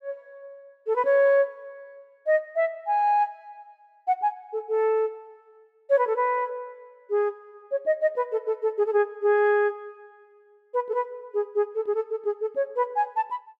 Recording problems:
none

